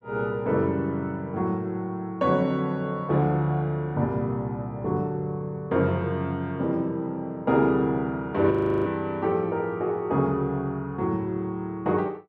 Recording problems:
audio freezing; at 8.5 s

